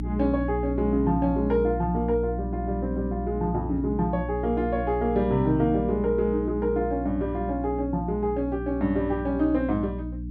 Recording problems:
hum; 60 Hz, harmonics up to 300 Hz, SNR 7 dB

